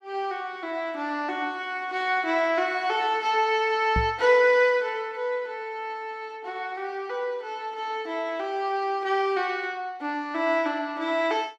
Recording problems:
knock on the microphone; at 4 s; peak +2 dB vs average level

